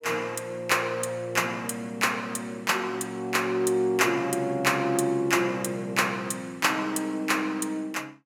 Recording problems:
none

